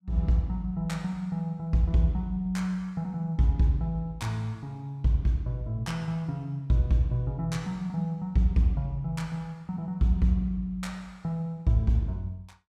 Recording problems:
none

